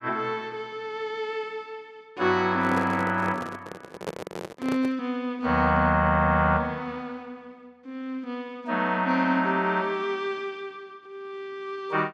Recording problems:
microphone handling noise; from 2.5 to 5 s; peak -2 dB vs average level

